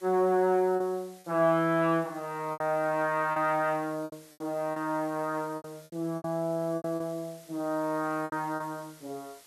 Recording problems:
hiss; slope 0 dB per octave, SNR 24 dB
packet loss; 8% of the sound replaced, filled with repeated pitch periods

